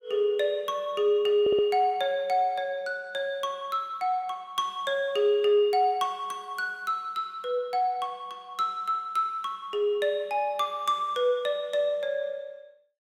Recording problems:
audio stuttering; at 1.5 s

